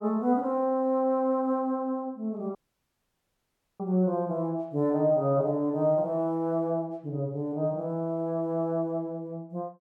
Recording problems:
dropout; at 2.5 s for 1.5 s

